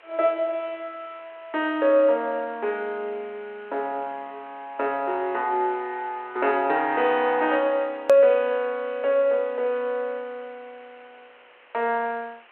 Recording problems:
telephone audio; 340 Hz to 3.3 kHz, G.726
background hiss; SNR 27 dB
edit click; at 8 s

